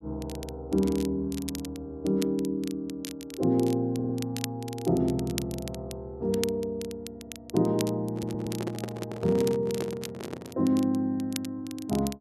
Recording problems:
crackle; vinyl, SNR 14 dB
stutter; at 4 s and at 8 s
microphone handling noise; from 8 to 11 s; peak -1 dB vs average level

